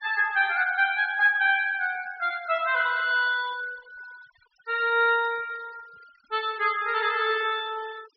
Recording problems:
low-pass filter; nothing above 5.5 kHz
noise reduction artefacts; signal-to-artefact ratio 22 dB

